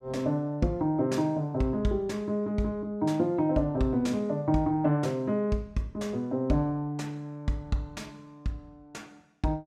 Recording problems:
none

